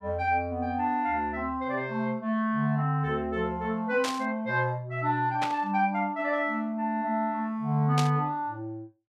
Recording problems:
static burst; at 4 s, at 5.5 s and at 8 s; peak +1 dB vs average level

